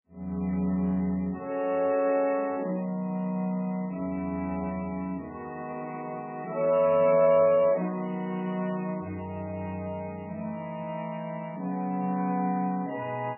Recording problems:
lossy compression; MP3, log-spectral distance 2 dB, nothing above 2.7 kHz

